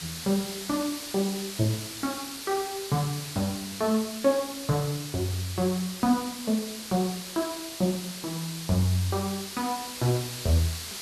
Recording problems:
hiss; slope +1 dB per octave, SNR 7 dB

